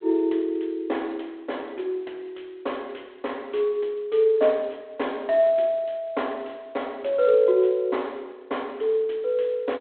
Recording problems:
phone line; 280 Hz to 3.6 kHz, G.726

